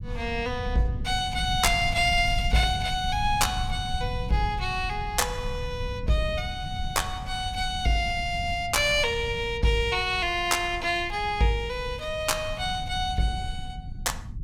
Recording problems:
low-frequency rumble; below 110 Hz, SNR 9 dB

